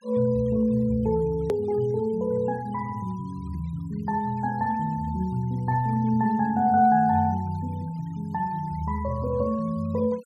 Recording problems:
denoising artefacts; signal-to-artefact ratio 26 dB
hard cut with a click; at 1.5 s

